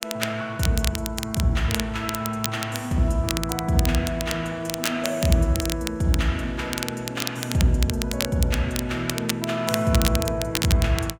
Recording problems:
crackle; vinyl, SNR 6 dB

